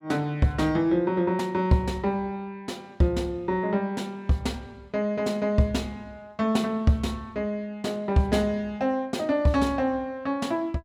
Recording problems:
none

